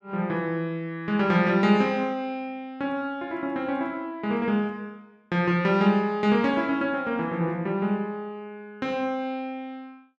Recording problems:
none

